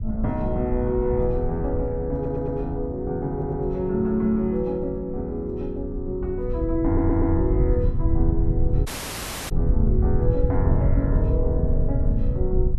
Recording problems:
wind on the microphone; below 96 Hz, SNR 1 dB
stutter; at 2 s, at 3.5 s and at 7 s
dropout; at 9 s for 0.5 s

